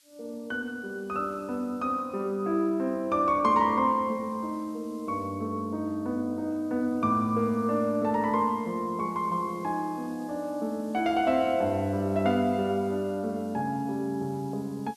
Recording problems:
hiss; SNR 29 dB

